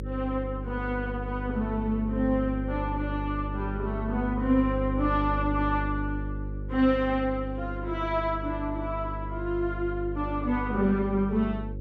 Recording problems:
electrical hum; 50 Hz, harmonics up to 550 Hz, SNR 6 dB

